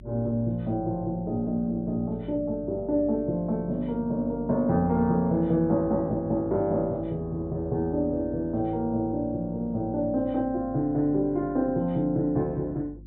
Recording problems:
treble missing; nothing above 4 kHz
electrical hum; 50 Hz, harmonics up to 350 Hz, SNR 19 dB

